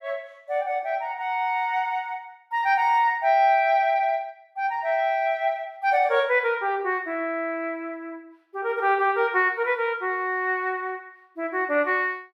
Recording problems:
none

